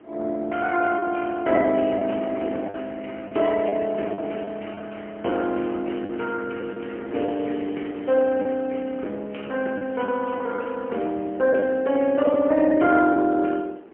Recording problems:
telephone audio; 240 Hz to 3.2 kHz, AMR-NB, then MP3
wind noise; below 590 Hz, SNR 18 dB
packet loss; 4% of the sound replaced, filled with the last packet
crackle; from 6.5 to 8.5 s and from 9.5 to 10 s; loose cable, SNR 28 dB

